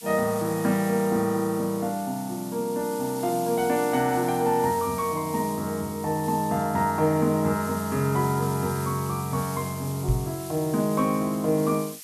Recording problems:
hiss; slope +5 dB per octave, SNR 14 dB
microphone bump; at 10 s; peak +4 dB vs average level

